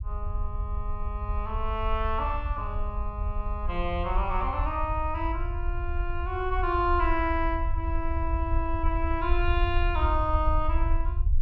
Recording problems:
rumble; below 68 Hz, SNR 1 dB

